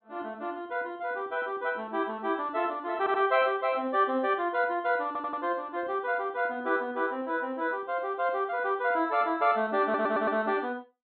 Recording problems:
treble cut off; nothing above 4.1 kHz
stutter; at 3 s, at 5 s and at 10 s

